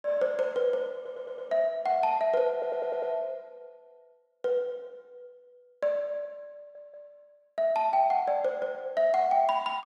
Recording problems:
audio stuttering; at 1 s, at 2.5 s and at 6.5 s

